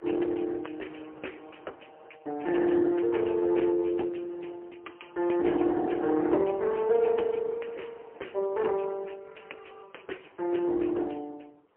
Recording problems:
phone line; 260 Hz to 3.1 kHz, AMR-NB, then MP3
wind noise; below 1 kHz, SNR 27 dB

